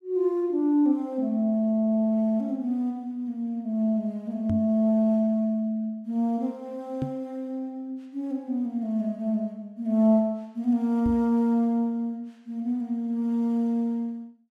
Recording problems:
microphone bump; at 4.5 s, at 7 s and at 11 s; peak -1 dB vs average level

